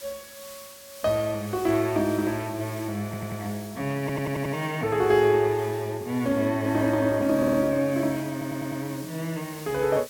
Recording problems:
hiss; slope +1 dB per octave, SNR 18 dB
audio stuttering; 4 times, first at 3 s

